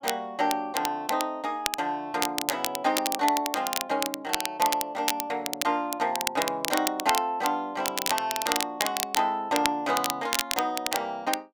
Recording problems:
crackle; vinyl, SNR 3 dB

